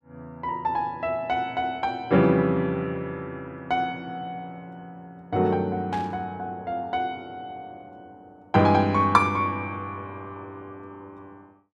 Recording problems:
burst of static; at 6 s; peak -10 dB vs average level

